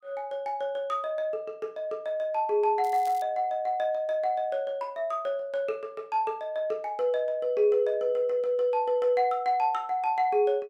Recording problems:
crackle; at 3 s; loose cable, SNR 23 dB

